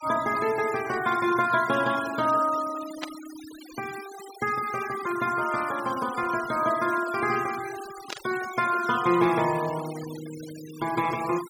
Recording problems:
noise reduction artefacts; signal-to-artefact ratio 15 dB
burst of static; at 3 s and at 8 s; peak -4 dB vs average level

